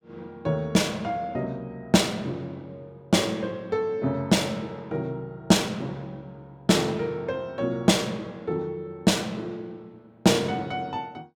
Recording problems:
none

